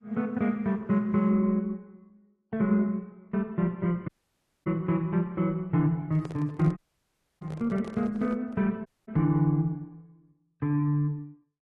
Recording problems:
lossy codec; Opus, then AAC, log-spectral distance 2 dB
audio cutting out; at 4 s for 0.5 s, at 7 s for 0.5 s and at 9 s
handling noise; from 6 to 8.5 s; peak -8 dB vs average level

